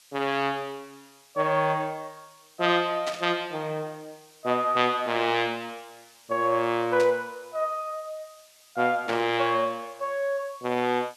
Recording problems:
hiss; slope +3 dB per octave, SNR 27 dB
static burst; at 3 s, at 7 s and at 9 s; peak -3 dB vs average level

